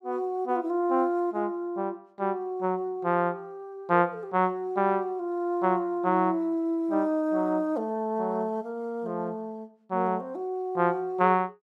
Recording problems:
none

